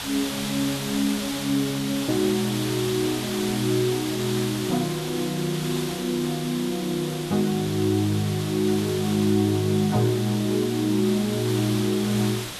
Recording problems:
hiss; slope 0 dB per octave, SNR 8 dB

